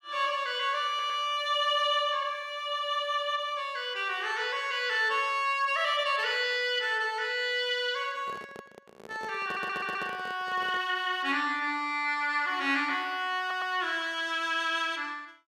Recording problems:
stutter; at 1 s, at 9.5 s and at 13 s
microphone handling noise; from 8 to 11 s; peak -9 dB vs average level

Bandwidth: 14 kHz